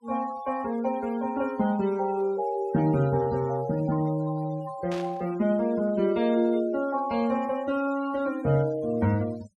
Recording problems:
noise reduction artefacts; signal-to-artefact ratio 21 dB
burst of static; at 5 s; peak -10 dB vs average level

